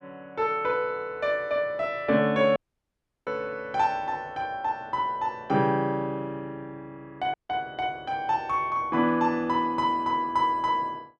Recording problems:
audio cutting out; at 2.5 s for 0.5 s and at 7.5 s

